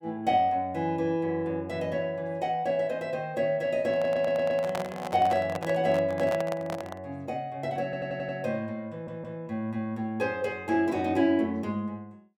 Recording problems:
handling noise; from 4 to 7 s; peak 0 dB vs average level
stutter; at 4 s, at 8 s and at 9 s

